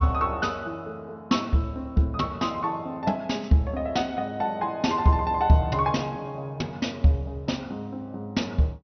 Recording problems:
low-pass filter; nothing above 6.1 kHz

